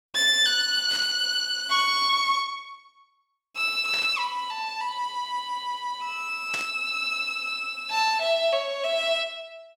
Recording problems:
burst of static; at 1 s, at 4 s and at 6.5 s; peak -4 dB vs average level

